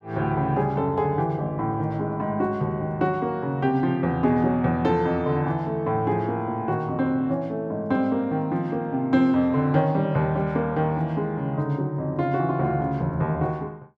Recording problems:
none

